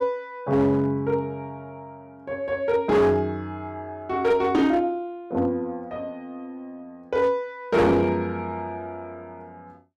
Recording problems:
distortion; hard clipping, signal-to-distortion ratio 11 dB

